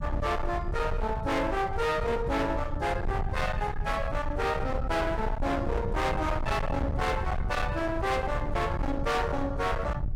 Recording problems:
distorted audio; hard clipping, uneven, signal-to-distortion ratio 7 dB
rumble; below 170 Hz, SNR 4 dB

